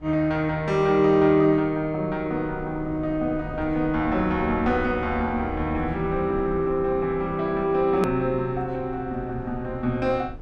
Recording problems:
rumble; below 210 Hz, SNR 17 dB
hard cut with a click; at 8 s

